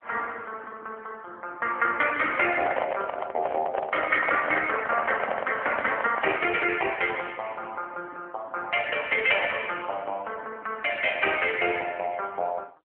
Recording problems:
telephone audio; 320 Hz to 3.1 kHz, AMR-NB
microphone handling noise; from 2.5 to 6.5 s; peak +2 dB vs average level

